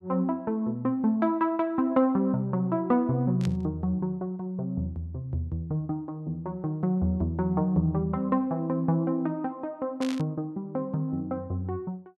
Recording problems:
burst of static; at 3.5 s and at 10 s; peak -7 dB vs average level

